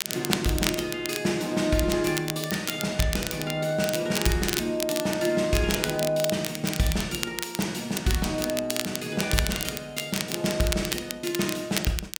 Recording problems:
crackle; vinyl, SNR 5 dB

